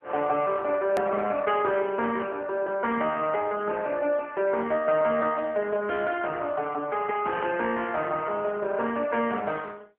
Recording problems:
telephone audio; 190 Hz to 3.3 kHz, AMR-NB
click at an edit; at 1 s

